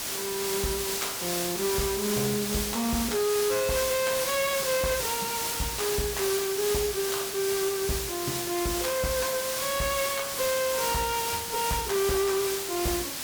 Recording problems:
distorted audio; hard clipping, signal-to-distortion ratio 11 dB
background hiss; slope 0 dB per octave, SNR 1 dB

